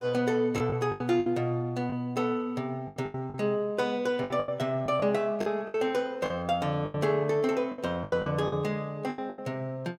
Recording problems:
packet loss; 12% of the sound replaced, filled with the last packet

